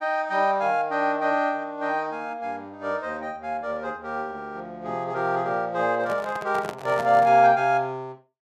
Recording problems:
handling noise; from 6 to 7.5 s; peak -5 dB vs average level

